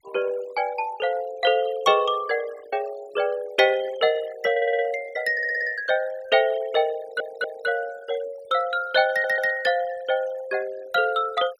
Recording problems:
noise reduction artefacts; signal-to-artefact ratio 20 dB
stutter; 4 times, first at 4.5 s

